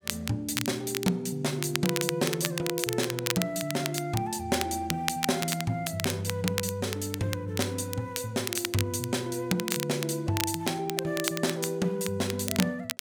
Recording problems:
crackle; vinyl, SNR 5 dB

